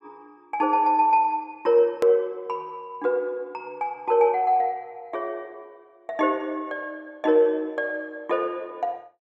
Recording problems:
click at an edit; at 2 s

